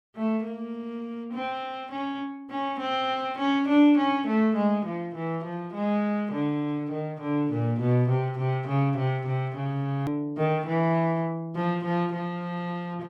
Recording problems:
hard cut with a click; at 10 s

